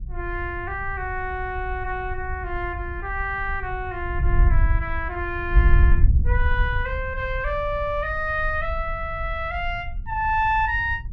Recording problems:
wind on the microphone; below 68 Hz, SNR 1 dB

